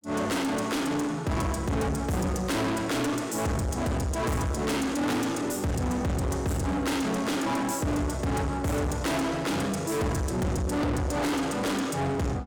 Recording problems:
distorted audio; soft clipping, signal-to-distortion ratio 6 dB

